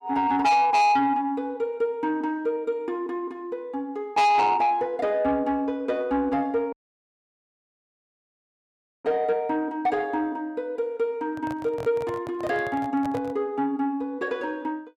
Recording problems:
distortion; soft clipping, signal-to-distortion ratio 7 dB
dropout; at 6.5 s for 2.5 s
microphone handling noise; from 11 to 13 s; peak -7 dB vs average level

